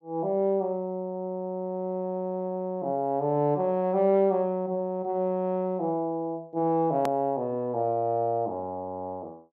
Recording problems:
hard cut with a click; at 7 s

